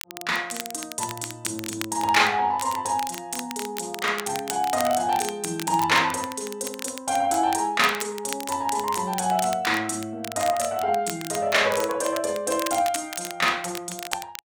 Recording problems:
crackling; vinyl, SNR 11 dB

